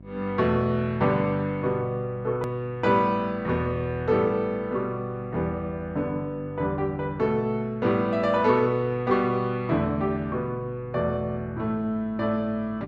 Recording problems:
hum; 50 Hz, harmonics up to 700 Hz, SNR 22 dB
hard cut with a click; at 2.5 s

